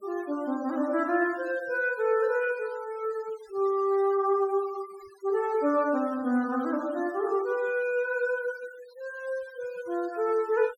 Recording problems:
denoising artefacts; signal-to-artefact ratio 24 dB

